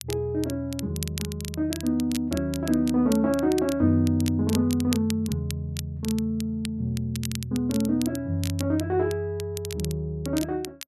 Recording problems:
crackle; vinyl, SNR 13 dB

